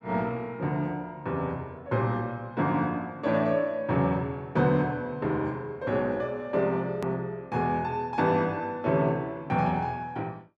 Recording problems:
click at an edit; at 7 s

